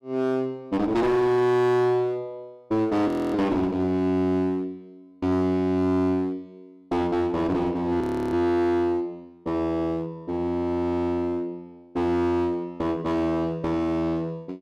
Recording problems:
distortion; hard clipping, uneven, signal-to-distortion ratio 6 dB
frozen audio; at 3 s and at 8 s

